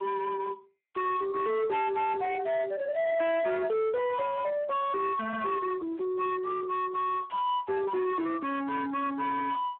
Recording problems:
telephone audio; 900 Hz to 2 kHz, Speex
distorted audio; soft clipping, signal-to-distortion ratio 8 dB

